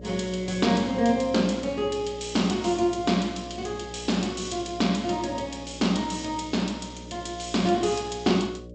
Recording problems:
lossy codec; G.722, log-spectral distance 6 dB, nothing above 8 kHz
hum; 60 Hz, harmonics up to 600 Hz, SNR 16 dB

